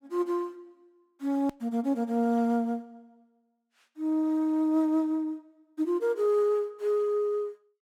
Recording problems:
hard cut with a click; at 1.5 s

